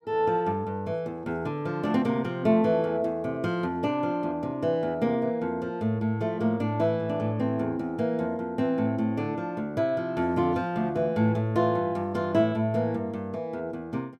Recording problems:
none

